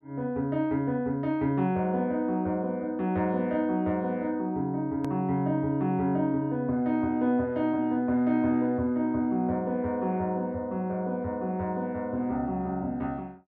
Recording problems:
hard cut with a click; at 5 s

